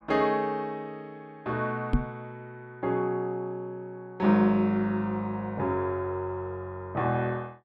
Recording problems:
microphone thump; at 2 s; peak +7 dB vs average level

